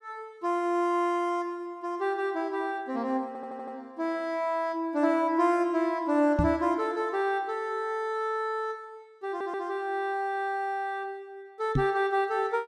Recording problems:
audio stuttering; at 3.5 s and at 9.5 s
knock on the microphone; at 6.5 s and at 12 s; peak +5 dB vs average level

